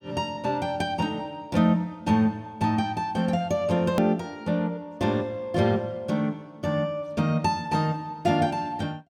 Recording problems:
edit click; at 4 s

